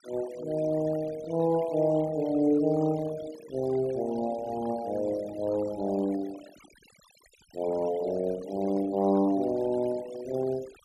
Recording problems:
denoising artefacts; signal-to-artefact ratio 19 dB

